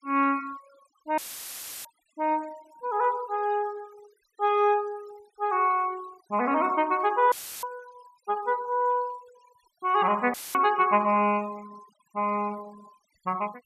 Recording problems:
denoising artefacts; signal-to-artefact ratio 25 dB
audio cutting out; at 1 s for 0.5 s, at 7.5 s and at 10 s; filled with static

